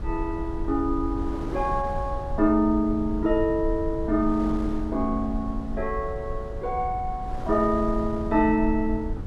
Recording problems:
rumble; below 72 Hz, SNR 9 dB
wind noise; below 650 Hz, SNR 15 dB

